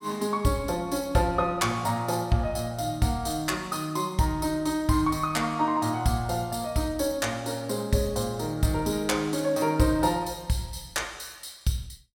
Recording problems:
none

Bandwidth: 17 kHz